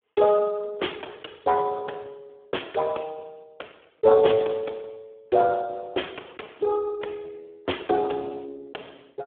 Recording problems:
phone line; 300 Hz to 3.5 kHz, Speex

